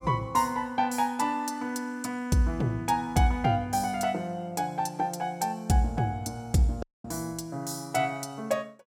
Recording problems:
dropout; at 7 s

